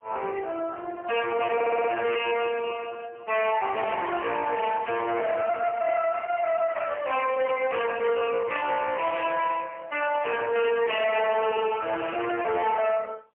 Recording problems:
telephone audio; 340 Hz to 3 kHz, AMR-NB, then MP3
distortion; hard clipping, uneven, signal-to-distortion ratio 6 dB
stutter; at 1.5 s

